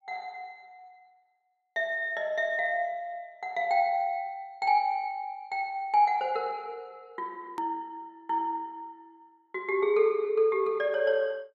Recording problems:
hard cut with a click; at 7.5 s

